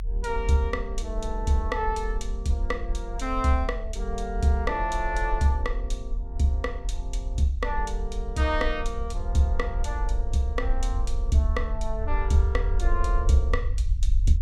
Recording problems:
rumble; below 52 Hz, SNR 3 dB

